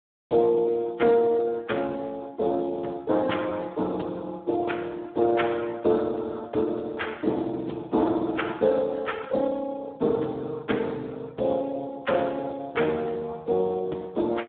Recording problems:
phone line; 240 Hz to 3.6 kHz, Speex

